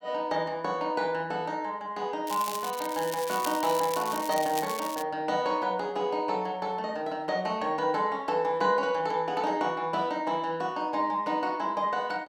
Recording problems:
crackle; from 2.5 to 5 s; loose cable, SNR 9 dB

